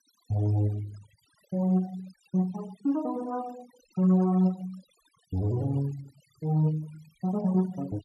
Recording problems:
noise reduction artefacts; signal-to-artefact ratio 23 dB

